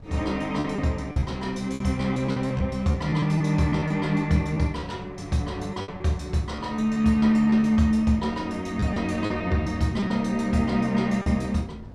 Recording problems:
wind noise; below 230 Hz, SNR 20 dB
lost packets; 8% of the sound replaced, filled with repeated pitch periods

